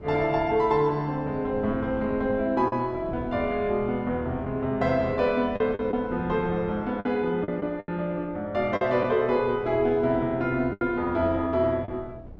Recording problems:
wind noise; below 310 Hz, SNR 17 dB
packet loss; 4% of the sound replaced, filled with the last packet

